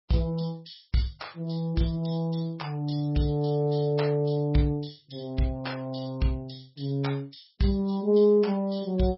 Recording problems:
lossy compression; MP3, log-spectral distance 4 dB, nothing above 5.5 kHz

